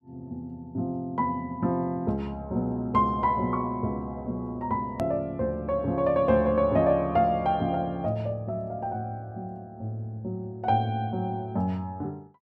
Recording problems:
edit click; at 5 s

